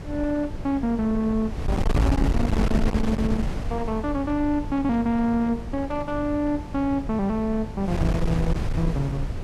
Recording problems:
distorted audio; hard clipping, uneven, signal-to-distortion ratio 12 dB
hum; 50 Hz, harmonics up to 650 Hz, SNR 17 dB
wind on the microphone; below 180 Hz, SNR 4 dB

